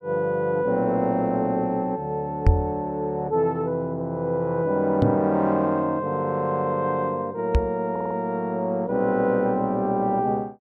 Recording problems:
microphone thump; at 2.5 s, at 5 s and at 7.5 s; peak +9 dB vs average level
audio stuttering; at 8 s

